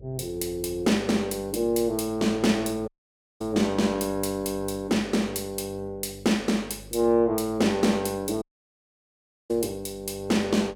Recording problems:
electrical hum; 50 Hz, harmonics up to 550 Hz, SNR 22 dB
audio cutting out; at 3 s for 0.5 s and at 8.5 s for 1 s

